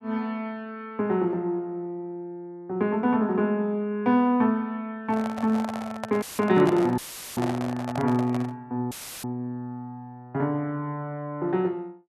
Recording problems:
handling noise; from 5 to 8.5 s; peak 0 dB vs average level
audio cutting out; at 6 s, at 7 s and at 9 s; filled with static

